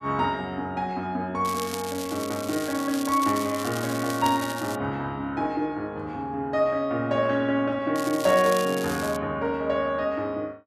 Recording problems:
crackling; from 1.5 to 5 s and from 8 to 9 s; loose cable, SNR 11 dB

